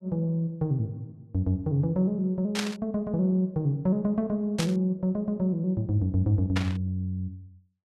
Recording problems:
burst of static; at 2.5 s, at 4.5 s and at 6.5 s; peak +2 dB vs average level

